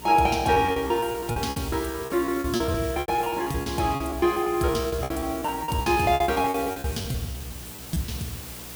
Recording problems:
electrical hum; 60 Hz, harmonics up to 480 Hz, SNR 20 dB
background hiss; slope -1 dB per octave, SNR 14 dB
lost packets; 20% of the sound replaced, filled with repeated pitch periods

